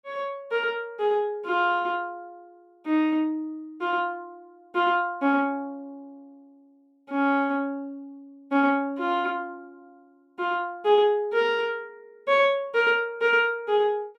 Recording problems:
none

